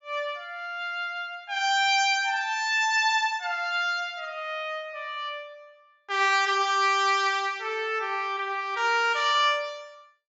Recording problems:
treble cut off; nothing above 8 kHz

